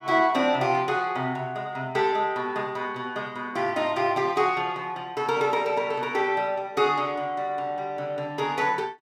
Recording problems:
none

